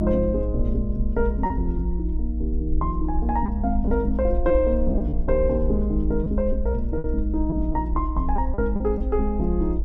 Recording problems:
rumble; below 58 Hz, SNR 2 dB
lost packets; 4% of the sound replaced, filled with repeated pitch periods

